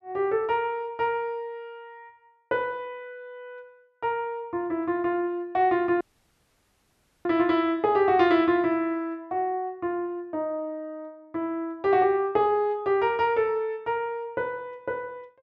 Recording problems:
dropout; at 6 s for 1 s

